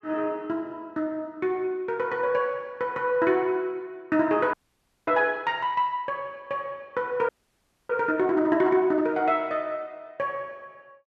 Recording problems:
frozen audio; at 4.5 s for 0.5 s and at 7.5 s for 0.5 s

